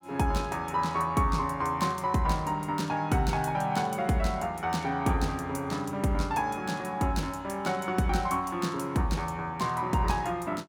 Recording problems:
none

